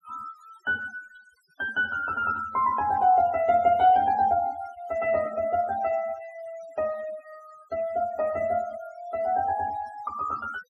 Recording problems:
denoising artefacts; signal-to-artefact ratio 22 dB

